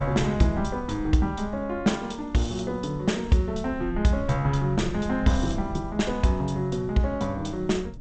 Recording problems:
codec artefacts; G.722, log-spectral distance 2 dB, nothing above 8 kHz
wind on the microphone; below 92 Hz, SNR 13 dB

